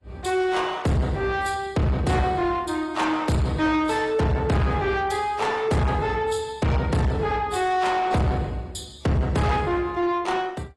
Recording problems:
lossy compression; AAC, log-spectral distance 3 dB, nothing above 11.3 kHz
distortion; soft clipping, signal-to-distortion ratio 8 dB

